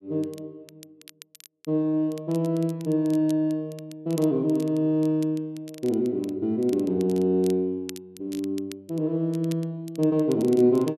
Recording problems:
crackle; vinyl, SNR 23 dB

